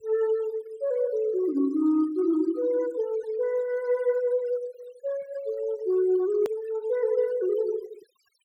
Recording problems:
noise reduction artefacts; signal-to-artefact ratio 22 dB
edit click; at 6.5 s

